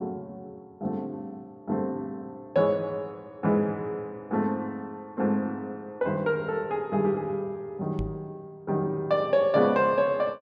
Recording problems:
microphone bump; at 8 s; peak -2 dB vs average level

